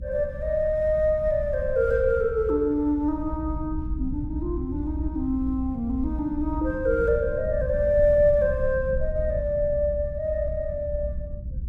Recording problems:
rumble; below 78 Hz, SNR 8 dB

